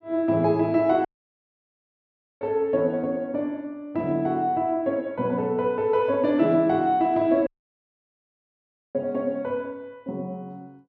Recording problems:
audio cutting out; at 1 s for 1.5 s and at 7.5 s for 1.5 s

